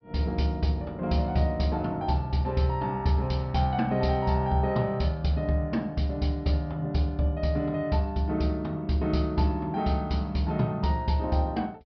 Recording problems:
treble cut off; nothing above 5.5 kHz

